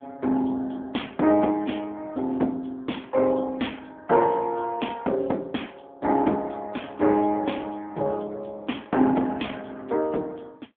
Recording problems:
telephone audio; 220 Hz to 3.4 kHz, AMR-NB

